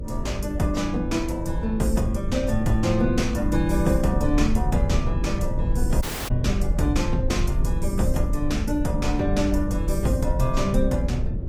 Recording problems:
codec artefacts; AAC, log-spectral distance 2 dB
electrical hum; 50 Hz, harmonics up to 600 Hz, SNR 9 dB
low-frequency rumble; below 76 Hz, SNR 3 dB
dropout; at 6 s

